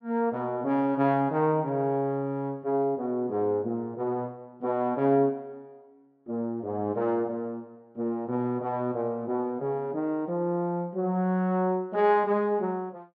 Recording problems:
none

